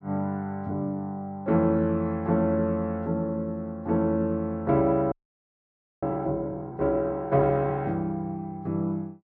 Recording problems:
frozen audio; at 5 s for 1 s

